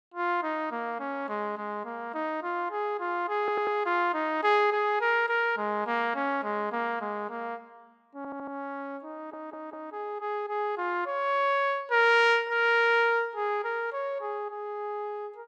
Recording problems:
audio stuttering; at 3.5 s, at 8 s and at 9 s

